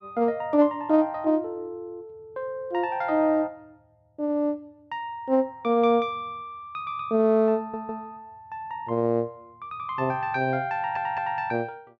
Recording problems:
audio stuttering; at 7.5 s and at 11 s

